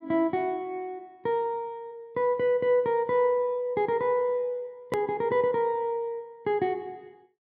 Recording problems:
edit click; at 5 s

